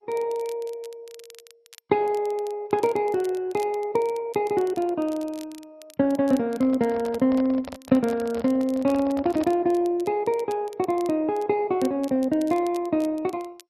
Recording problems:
lossy codec; MP2, log-spectral distance 2 dB
crackling; vinyl, SNR 24 dB
handling noise; from 6.5 to 9.5 s; peak -7 dB vs average level

